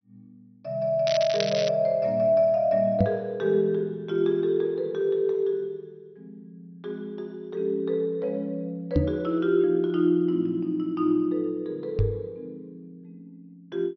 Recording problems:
treble missing; nothing above 6 kHz
crackling; at 1 s; loose cable, SNR 9 dB
microphone bump; at 3 s, at 9 s and at 12 s; peak +6 dB vs average level

